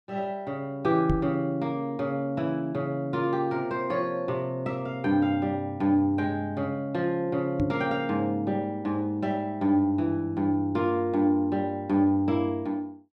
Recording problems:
microphone thump; at 1 s and at 7.5 s; peak +4 dB vs average level

